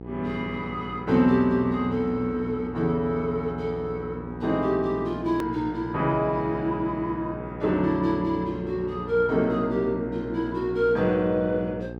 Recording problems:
hum; 60 Hz, harmonics up to 960 Hz, SNR 12 dB
click at an edit; at 5.5 s

